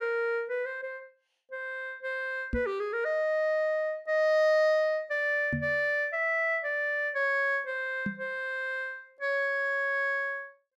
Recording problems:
microphone bump; at 2.5 s, at 5.5 s and at 8 s; peak 0 dB vs average level

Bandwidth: 15.5 kHz